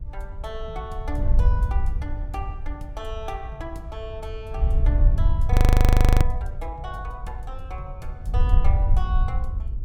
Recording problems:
electrical hum; 60 Hz, harmonics up to 540 Hz, SNR 22 dB
wind on the microphone; below 76 Hz, SNR -12 dB
frozen audio; at 5.5 s for 0.5 s

